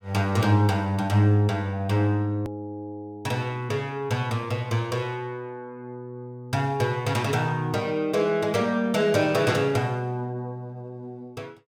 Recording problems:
edit click; at 2.5 s

